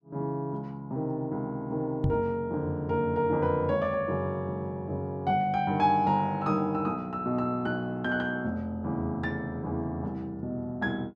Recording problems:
microphone thump; at 2 s; peak +4 dB vs average level

